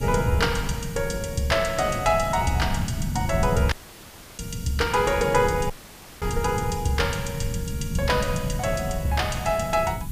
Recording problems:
hiss; slope +1 dB per octave, SNR 19 dB
rumble; below 170 Hz, SNR 5 dB
dropout; at 3.5 s for 0.5 s and at 5.5 s for 0.5 s; filled with static

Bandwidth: 15 kHz